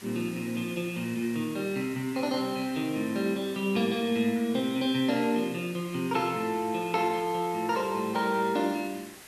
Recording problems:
hiss; SNR 18 dB

